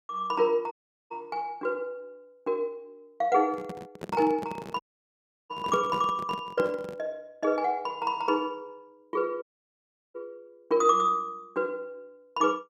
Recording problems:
dropout; at 0.5 s, at 5 s for 0.5 s and at 9.5 s for 0.5 s
handling noise; from 3.5 to 7 s; peak -2 dB vs average level

